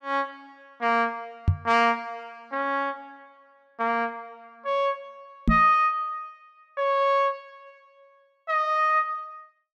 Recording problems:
knock on the microphone; at 1.5 s and at 5.5 s; peak +7 dB vs average level

